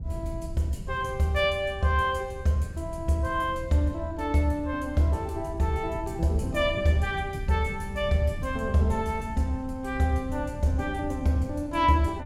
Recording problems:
wind on the microphone; below 120 Hz, SNR 12 dB

